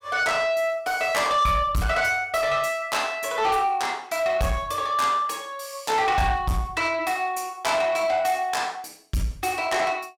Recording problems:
distortion; soft clipping, signal-to-distortion ratio 11 dB

